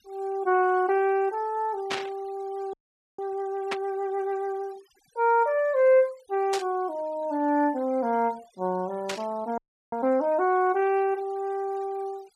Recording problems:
denoising artefacts; signal-to-artefact ratio 27 dB
static burst; 4 times, first at 2 s; peak 0 dB vs average level
frozen audio; at 2.5 s and at 9.5 s

